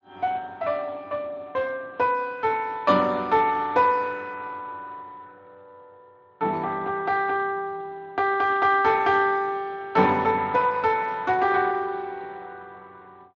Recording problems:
codec artefacts; Speex, log-spectral distance 3 dB

